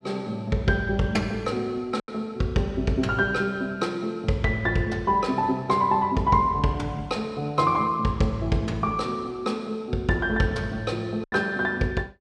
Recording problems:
packet loss; 1.3% of the sound replaced, filled with silence

